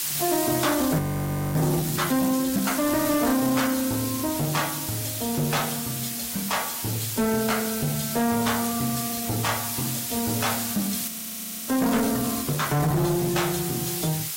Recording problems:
lossy codec; AAC, log-spectral distance 13 dB, nothing above 16 kHz
distorted audio; soft clipping, signal-to-distortion ratio 10 dB
background hiss; SNR 3 dB
audio freezing; at 1 s for 0.5 s and at 11 s for 0.5 s

